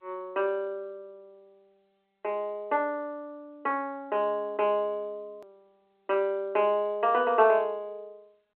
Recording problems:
phone line; 260 Hz to 3.2 kHz, G.711
click at an edit; at 5.5 s

